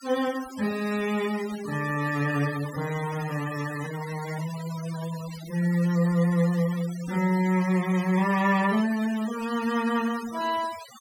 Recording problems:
denoising artefacts; signal-to-artefact ratio 15 dB

